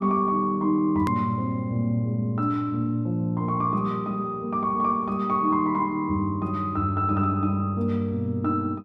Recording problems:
hard cut with a click; at 1 s

